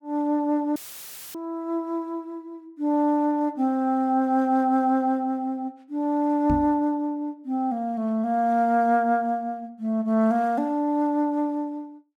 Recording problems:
dropout; at 1 s for 0.5 s; filled with static
microphone bump; at 6.5 s; peak 0 dB vs average level

